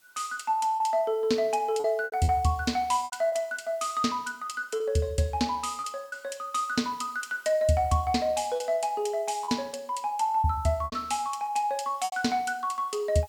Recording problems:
background hiss; slope +1 dB per octave, SNR 29 dB
lost packets; 6% of the sound replaced, filled with repeated pitch periods

